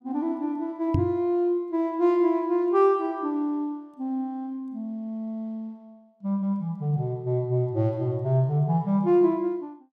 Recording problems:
knock on the microphone; at 1 s; peak +4 dB vs average level

